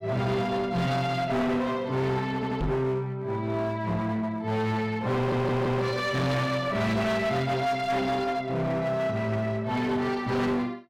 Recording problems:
distortion; hard clipping, uneven, signal-to-distortion ratio 7 dB
stutter; at 2.5 s and at 5 s
knock on the microphone; at 2.5 s; peak 0 dB vs average level

